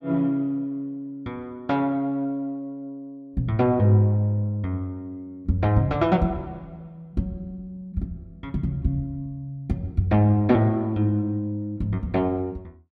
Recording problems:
none

